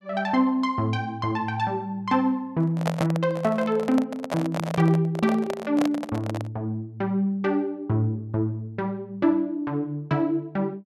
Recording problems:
microphone handling noise; from 2.5 to 6.5 s; peak +1 dB vs average level

